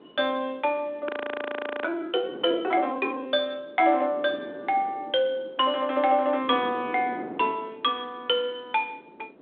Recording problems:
telephone audio; 280 Hz to 3.6 kHz, G.726
wind on the microphone; below 730 Hz, SNR 16 dB
audio freezing; at 1 s for 1 s

